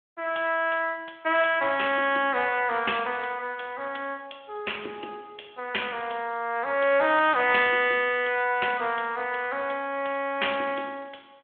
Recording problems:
telephone audio; 300 Hz to 3.4 kHz, Speex

